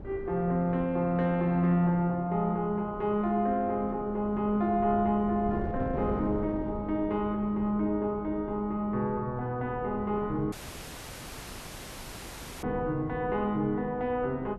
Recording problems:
wind noise; below 370 Hz, SNR 13 dB
audio cutting out; at 11 s for 2 s

